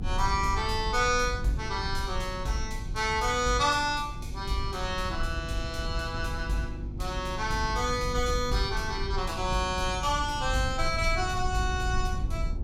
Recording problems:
hum; 50 Hz, harmonics up to 350 Hz, SNR 14 dB
low-frequency rumble; below 82 Hz, SNR 7 dB

